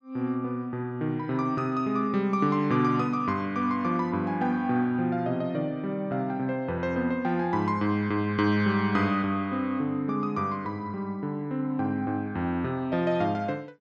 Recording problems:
none

